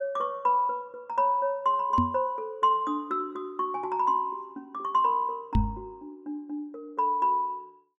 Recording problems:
microphone bump; at 2 s and at 5.5 s; peak +6 dB vs average level

